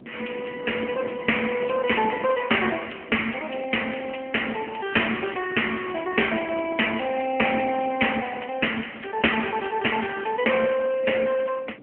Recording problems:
phone line; 240 Hz to 3.1 kHz, AMR-NB
wind on the microphone; below 410 Hz, SNR 18 dB

